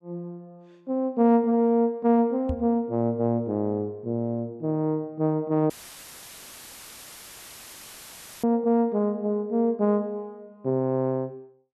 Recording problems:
microphone thump; at 2.5 s; peak -2 dB vs average level
audio cutting out; at 5.5 s for 2.5 s; filled with static

